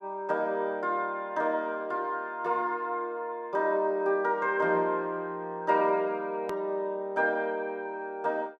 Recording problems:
edit click; at 6.5 s

